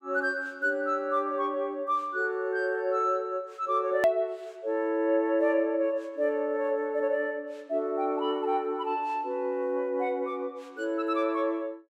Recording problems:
click at an edit; at 4 s

